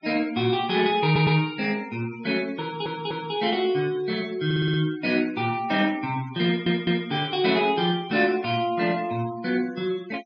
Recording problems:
denoising artefacts; signal-to-artefact ratio 22 dB
stutter; 4 times, first at 1 s

